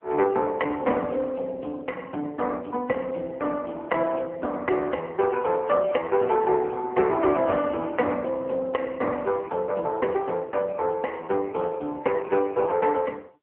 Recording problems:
telephone audio; 190 Hz to 3.4 kHz, AMR-NB

